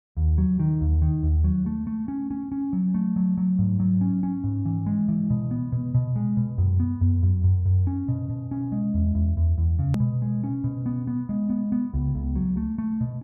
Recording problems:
click at an edit; at 10 s

